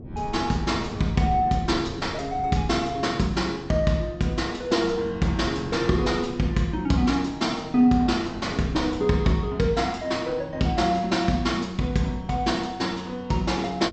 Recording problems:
treble cut off; nothing above 8 kHz
wind noise; below 240 Hz, SNR 17 dB

